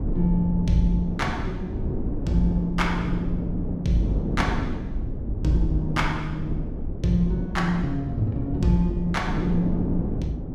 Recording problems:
rumble; below 78 Hz, SNR 9 dB
wind noise; below 290 Hz, SNR 5 dB

